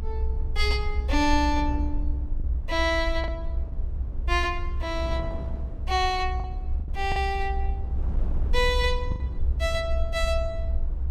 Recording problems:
rumble; below 66 Hz, SNR 3 dB
wind noise; below 230 Hz, SNR 15 dB
packet loss; 2% of the sound replaced, filled with the last packet

